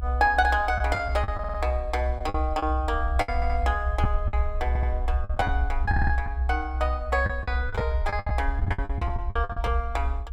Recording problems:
rumble; below 70 Hz, strongest tone 64 Hz, SNR 1 dB
lost packets; 11% of the sound replaced, filled with the last packet
stutter; 4 times, first at 1.5 s

